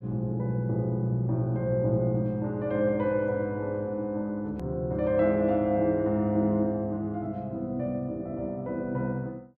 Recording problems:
click at an edit; at 4.5 s

